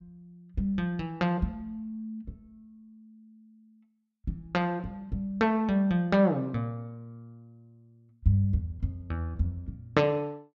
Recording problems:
none

